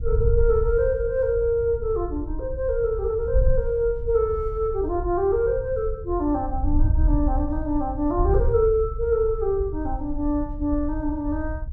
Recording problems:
wind on the microphone; below 70 Hz, SNR 5 dB

